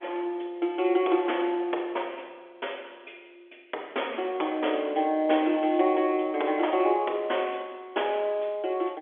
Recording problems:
telephone audio; 280 Hz to 3.5 kHz, G.711

